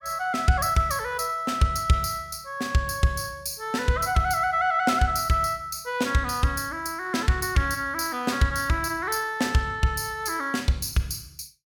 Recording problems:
none

